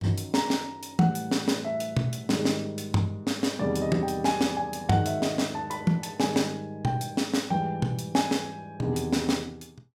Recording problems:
none

